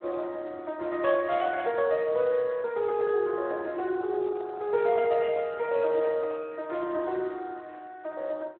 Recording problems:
telephone audio; 320 Hz to 2.8 kHz, Speex
microphone handling noise; from 4 to 6.5 s; peak -8 dB vs average level

